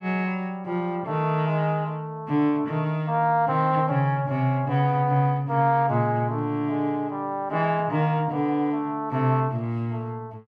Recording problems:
none

